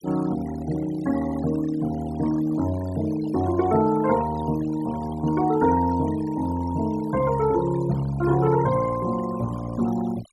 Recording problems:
denoising artefacts; signal-to-artefact ratio 16 dB

